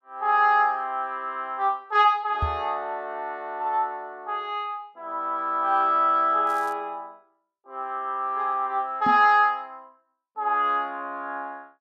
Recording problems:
microphone bump; at 2.5 s and at 9 s; peak 0 dB vs average level
crackle; at 6.5 s; loose cable, SNR 27 dB

